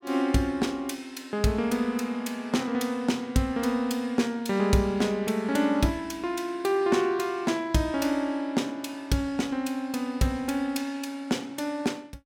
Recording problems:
none

